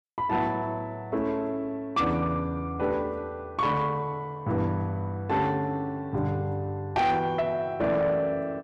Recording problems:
distortion; soft clipping, signal-to-distortion ratio 12 dB

